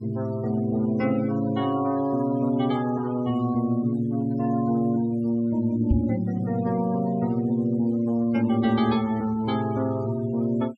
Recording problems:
denoising artefacts; signal-to-artefact ratio 20 dB
microphone bump; at 6 s; peak +5 dB vs average level

